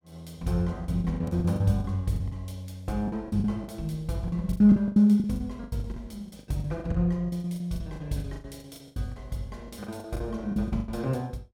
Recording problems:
packet loss; 18% of the sound replaced, filled with the last packet

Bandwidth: 16.5 kHz